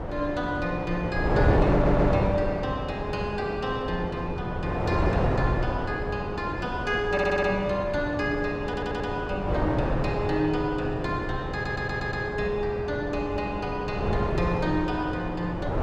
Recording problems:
wind on the microphone; below 600 Hz, SNR 1 dB
stutter; 4 times, first at 1.5 s

